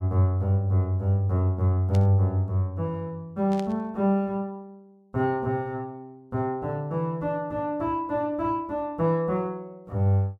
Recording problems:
burst of static; at 2 s and at 3.5 s; peak -11 dB vs average level

